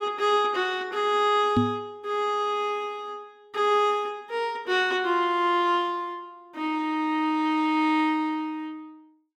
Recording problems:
knock on the microphone; at 1.5 s; peak +6 dB vs average level

